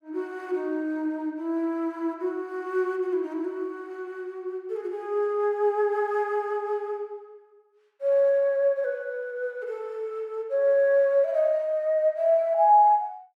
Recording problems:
none

